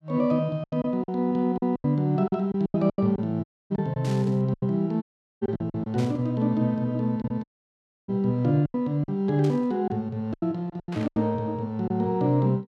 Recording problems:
lost packets; 11% of the sound replaced, filled with silence
audio cutting out; at 3.5 s, at 5 s and at 7.5 s for 0.5 s
burst of static; 4 times, first at 4 s; peak -11 dB vs average level

